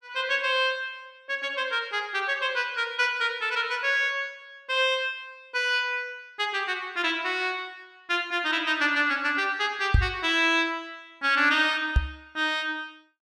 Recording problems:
knock on the microphone; at 10 s and at 12 s; peak +8 dB vs average level

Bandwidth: 14 kHz